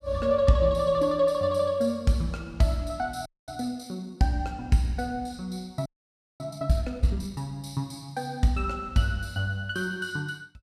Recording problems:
frozen audio; at 3.5 s and at 6 s for 0.5 s

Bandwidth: 15 kHz